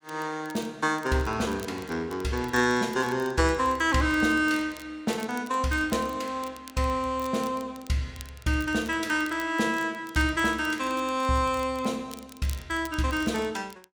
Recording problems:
crackling; vinyl, SNR 21 dB

